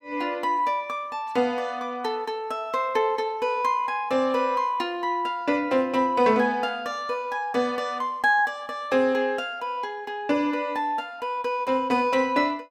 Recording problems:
none

